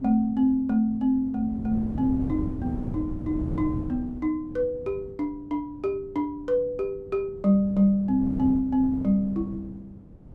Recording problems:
wind on the microphone; below 220 Hz, SNR 11 dB

